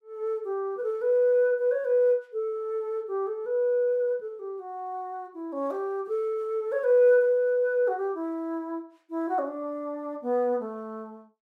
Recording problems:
none

